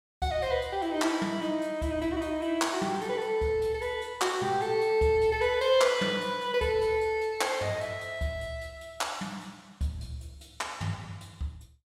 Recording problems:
none

